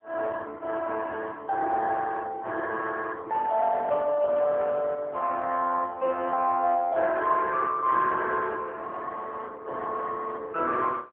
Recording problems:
telephone audio; 260 Hz to 2.6 kHz, AMR-NB

